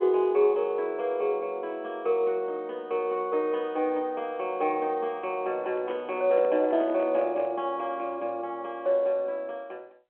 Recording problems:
telephone audio; 220 Hz to 3.3 kHz, G.711
handling noise; from 5.5 to 7.5 s; peak -6 dB vs average level

